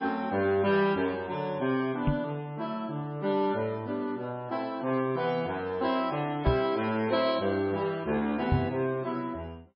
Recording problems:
lossy compression; MP3, log-spectral distance 2 dB, nothing above 4.9 kHz
knock on the microphone; at 2 s, at 6.5 s and at 8.5 s; peak +7 dB vs average level

